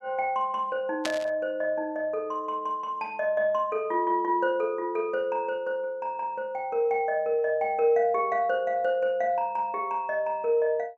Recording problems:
static burst; at 1 s; peak 0 dB vs average level

